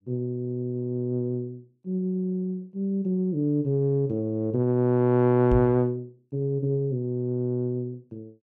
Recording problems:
microphone bump; at 5.5 s; peak +4 dB vs average level

